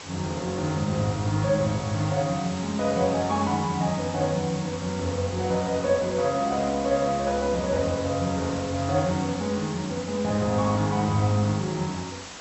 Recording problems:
treble missing; nothing above 7.9 kHz
background hiss; slope -2 dB per octave, SNR 12 dB

